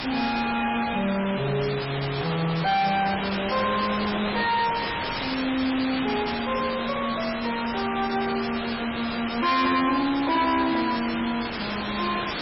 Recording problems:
lossy codec; MP3, log-spectral distance 18 dB, nothing above 5 kHz
distorted audio; soft clipping, signal-to-distortion ratio 8 dB
hiss; SNR 5 dB
handling noise; from 2 to 4.5 s; peak -5 dB vs average level

